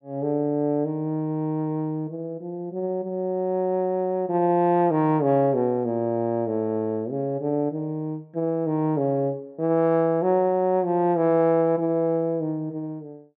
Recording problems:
none

